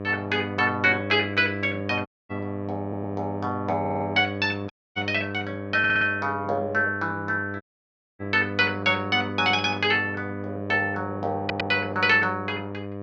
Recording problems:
electrical hum; 50 Hz, harmonics up to 1.8 kHz, SNR 9 dB
dropout; at 2 s, at 4.5 s and at 7.5 s for 0.5 s
audio stuttering; 4 times, first at 3 s

